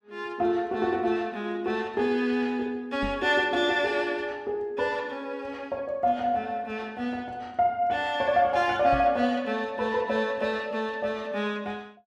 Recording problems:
microphone bump; at 3 s and at 9 s; peak -4 dB vs average level

